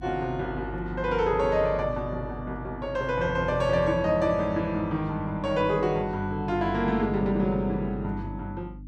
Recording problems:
hum; 50 Hz, harmonics up to 300 Hz, SNR 13 dB

